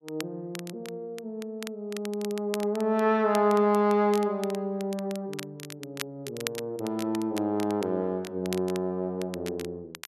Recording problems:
crackle; vinyl, SNR 14 dB

